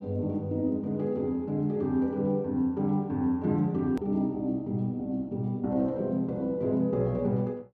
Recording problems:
hard cut with a click; at 4 s

